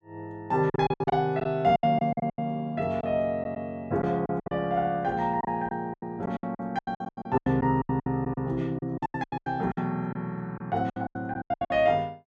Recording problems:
packet loss; 18% of the sound replaced, filled with silence

